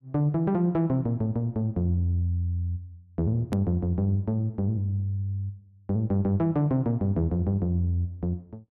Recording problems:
click at an edit; at 3.5 s

